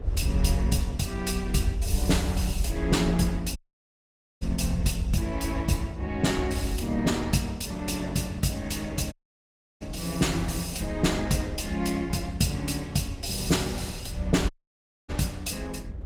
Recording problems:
codec artefacts; Opus, log-spectral distance 3 dB
rumble; below 82 Hz, SNR 6 dB
wind on the microphone; below 450 Hz, SNR 21 dB
audio cutting out; at 3.5 s for 1 s, at 9 s for 0.5 s and at 15 s for 0.5 s

